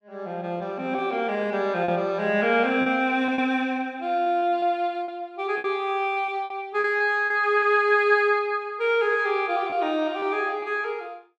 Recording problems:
packet loss; 5% of the sound replaced, filled with repeated pitch periods

